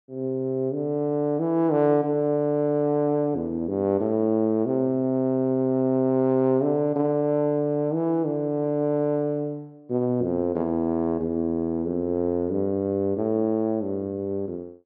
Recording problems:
none

